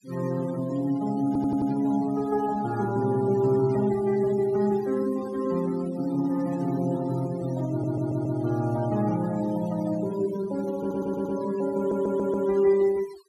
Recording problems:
denoising artefacts; signal-to-artefact ratio 19 dB
audio stuttering; 4 times, first at 1.5 s

